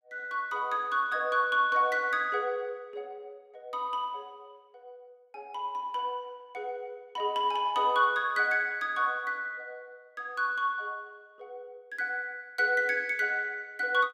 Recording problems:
none

